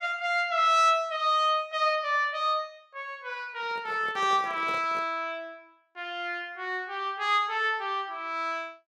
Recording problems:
microphone handling noise; from 3.5 to 5 s; peak -11 dB vs average level

